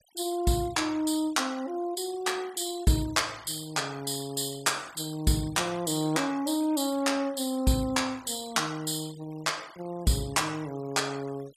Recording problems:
denoising artefacts; signal-to-artefact ratio 21 dB

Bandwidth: 14.5 kHz